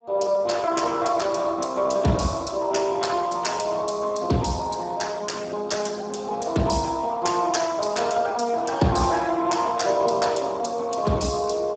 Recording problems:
lossy codec; Speex, log-spectral distance 6 dB, nothing above 7.8 kHz

